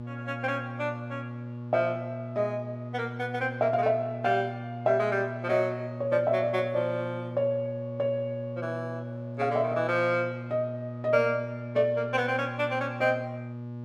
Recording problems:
hum; 60 Hz, harmonics up to 840 Hz, SNR 9 dB

